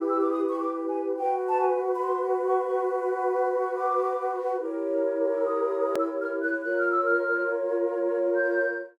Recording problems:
click at an edit; at 6 s

